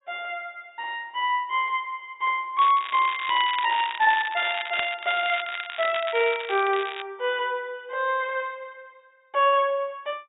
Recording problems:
low-pass filter; nothing above 4 kHz
crackle; from 2.5 to 7 s; loose cable, SNR 10 dB

